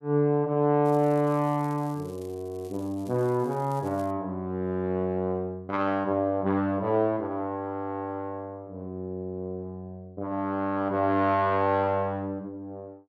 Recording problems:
crackle; from 1 to 4 s; loose cable, SNR 27 dB

